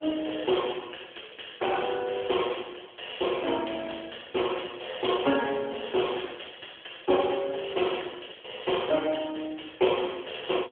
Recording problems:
telephone audio; 240 Hz to 3.4 kHz, AMR-NB

